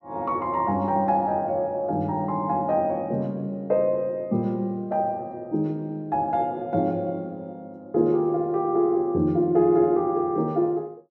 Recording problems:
none

